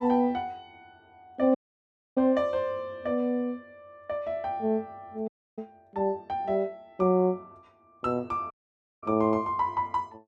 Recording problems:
dropout; at 1.5 s for 0.5 s, at 5.5 s and at 8.5 s for 0.5 s

